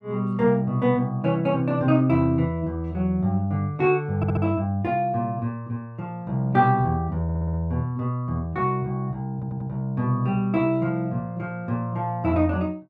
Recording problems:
stutter; at 4 s, at 7 s and at 9.5 s

